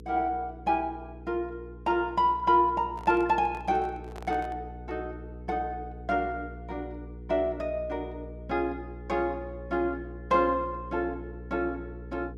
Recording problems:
mains hum; 60 Hz, harmonics up to 480 Hz, SNR 14 dB
handling noise; from 3 to 4.5 s; peak -11 dB vs average level

